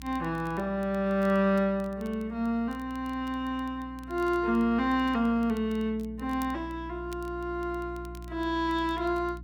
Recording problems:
hum; 60 Hz, harmonics up to 300 Hz, SNR 16 dB
crackling; vinyl, SNR 28 dB

